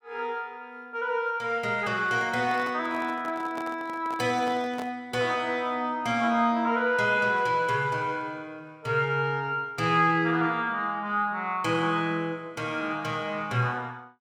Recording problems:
handling noise; from 2 to 5 s; peak -7 dB vs average level

